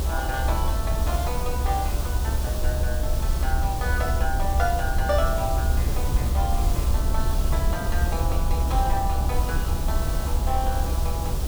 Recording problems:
hiss; SNR 4 dB
rumble; below 70 Hz, SNR -5 dB

